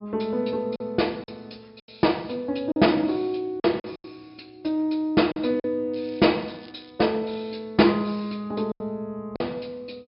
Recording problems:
low-pass filter; nothing above 5.5 kHz
lost packets; 6% of the sound replaced, filled with silence
crackle; at 6 s; loose cable, SNR 27 dB

